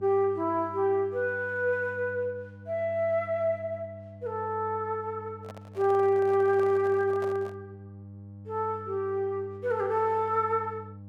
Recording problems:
hum; 50 Hz, harmonics up to 600 Hz, SNR 18 dB
handling noise; from 5.5 to 7.5 s; peak -10 dB vs average level

